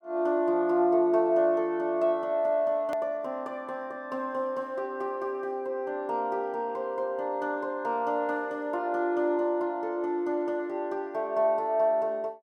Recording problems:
hard cut with a click; at 3 s

